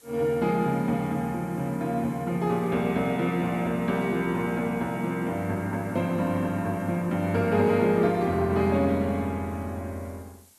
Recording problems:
background hiss; slope -1 dB per octave, SNR 27 dB

